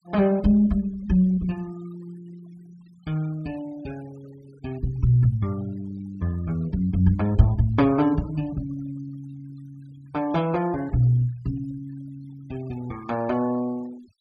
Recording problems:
noise reduction artefacts; signal-to-artefact ratio 25 dB

